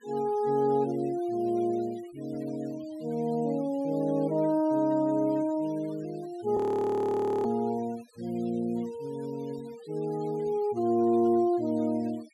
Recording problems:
denoising artefacts; signal-to-artefact ratio 25 dB
audio freezing; at 6.5 s for 1 s

